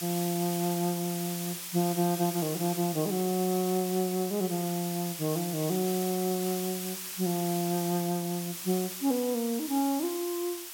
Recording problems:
background hiss; slope +3 dB per octave, SNR 6 dB

